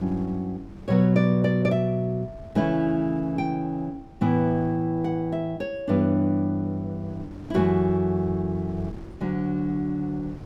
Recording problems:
wind noise; below 260 Hz, SNR 20 dB

